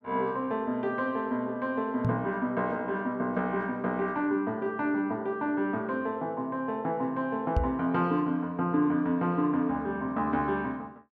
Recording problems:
microphone bump; at 2 s and at 7.5 s; peak +6 dB vs average level

